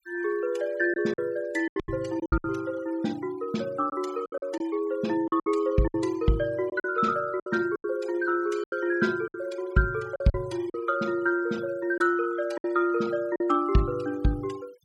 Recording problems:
noise reduction artefacts; signal-to-artefact ratio 22 dB
packet loss; 8% of the sound replaced, filled with silence

